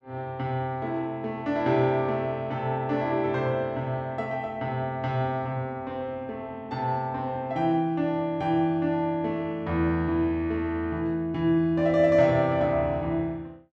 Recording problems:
none

